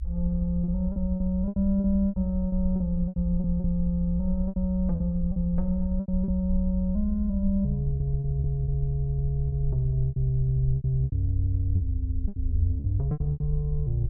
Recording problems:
low-frequency rumble; below 66 Hz, SNR 5 dB
lost packets; 11% of the sound replaced, filled with repeated pitch periods

